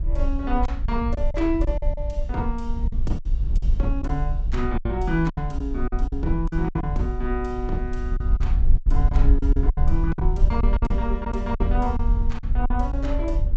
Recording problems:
treble missing; nothing above 8 kHz
low-frequency rumble; below 54 Hz, SNR -3 dB
lost packets; 9% of the sound replaced, filled with silence

